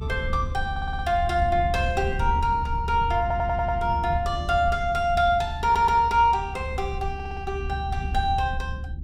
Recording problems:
low-frequency rumble; below 86 Hz, SNR 7 dB
audio stuttering; 4 times, first at 0.5 s

